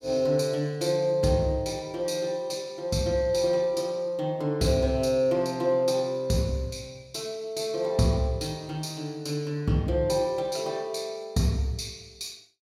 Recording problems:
none

